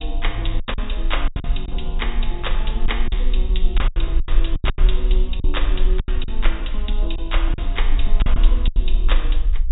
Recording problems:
treble cut off; nothing above 4 kHz
low-frequency rumble; below 38 Hz, strongest tone 22 Hz, SNR -6 dB
lost packets; 11% of the sound replaced, filled with silence

